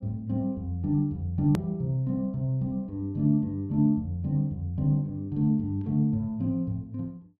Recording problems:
hard cut with a click; at 1.5 s

